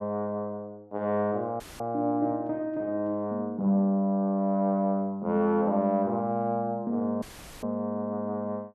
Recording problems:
audio cutting out; at 1.5 s and at 7 s; filled with static

